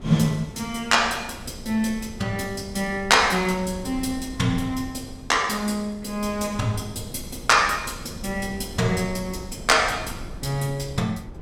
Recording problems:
wind on the microphone; below 210 Hz, SNR 16 dB

